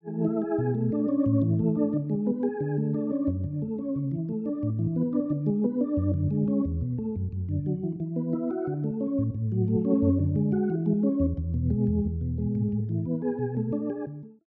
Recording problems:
none

